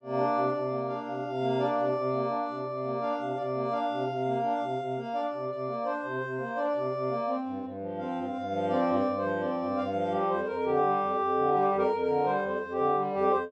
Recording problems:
none

